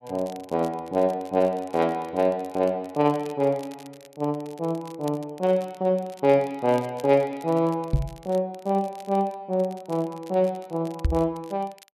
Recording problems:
crackling; vinyl, SNR 26 dB
knock on the microphone; at 8 s and at 11 s; peak +6 dB vs average level

